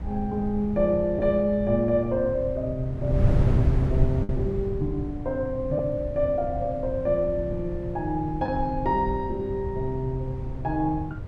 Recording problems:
wind noise; below 130 Hz, SNR 5 dB
packet loss; 0.9% of the sound replaced, filled with the last packet

